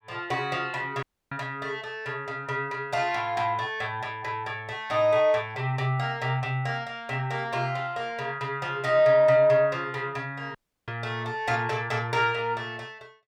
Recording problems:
audio cutting out; at 1 s and at 11 s

